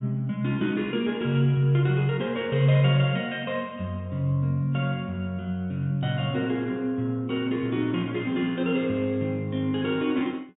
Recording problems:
low-pass filter; nothing above 4 kHz

